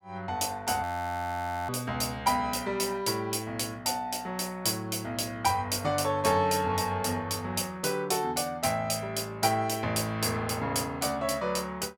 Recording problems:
frozen audio; at 1 s for 1 s

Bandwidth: 17 kHz